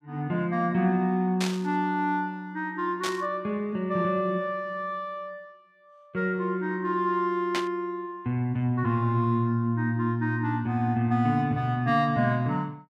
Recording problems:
burst of static; at 1.5 s, at 3 s and at 7.5 s; peak 0 dB vs average level

